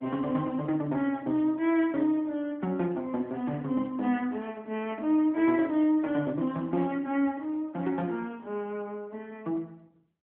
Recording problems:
phone line; 170 Hz to 3.6 kHz, AMR-NB

